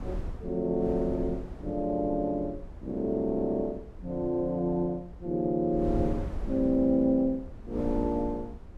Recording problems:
wind on the microphone; below 110 Hz, SNR 12 dB

